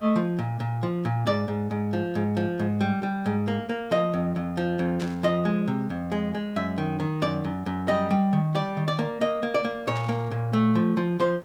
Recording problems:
background hiss; SNR 26 dB
burst of static; at 5 s and at 10 s; peak -9 dB vs average level

